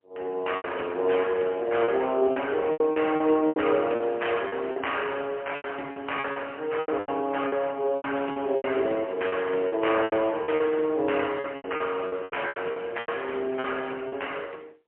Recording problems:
phone line; 280 Hz to 3.1 kHz, AMR-NB, then MP3
lost packets; 13% of the sound replaced, filled with repeated pitch periods

